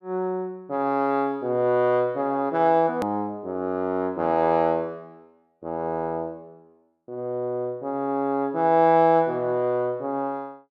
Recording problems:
click at an edit; at 3 s

